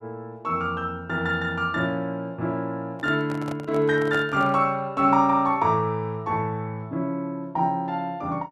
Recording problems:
microphone handling noise; from 3 to 4.5 s; peak -6 dB vs average level

